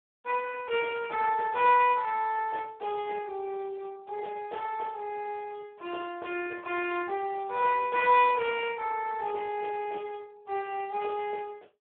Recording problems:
phone line; 280 Hz to 3.4 kHz, Speex

